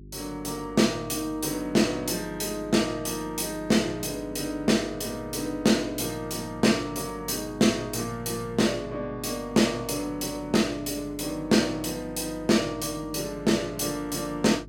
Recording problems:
mains hum; 50 Hz, harmonics up to 400 Hz, SNR 19 dB

